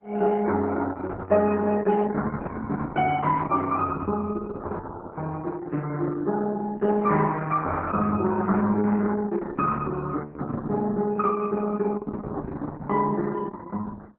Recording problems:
lossy compression; MP3, then Opus, log-spectral distance 3 dB

